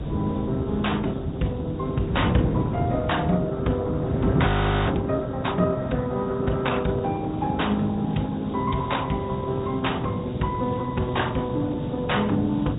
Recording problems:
treble missing; nothing above 3.8 kHz
lossy compression; Opus, log-spectral distance 2 dB
background hiss; SNR 27 dB
wind noise; below 270 Hz, SNR 2 dB
frozen audio; at 4.5 s

